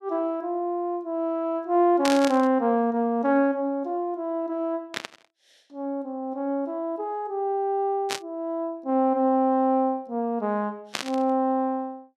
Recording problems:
burst of static; 4 times, first at 2 s; peak +1 dB vs average level

